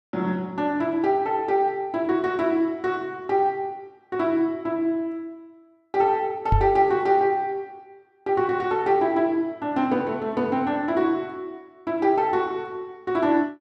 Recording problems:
knock on the microphone; at 6.5 s; peak +4 dB vs average level

